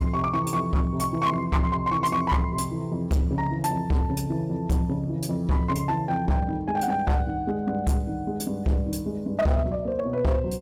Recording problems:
distorted audio; hard clipping, signal-to-distortion ratio 8 dB

